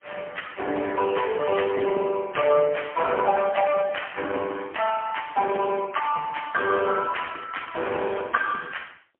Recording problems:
telephone audio; 260 Hz to 3.2 kHz, AMR-NB, then MP3

